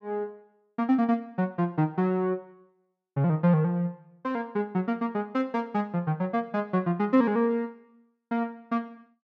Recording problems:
none

